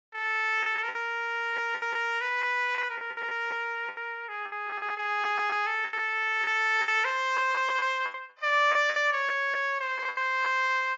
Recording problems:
lossy codec; AAC, log-spectral distance 2 dB
lost packets; 11% of the sound replaced, filled with the last packet

